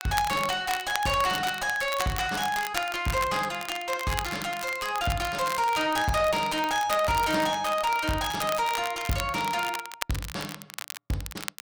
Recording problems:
distorted audio; soft clipping, signal-to-distortion ratio 9 dB
crackling; vinyl, SNR 10 dB

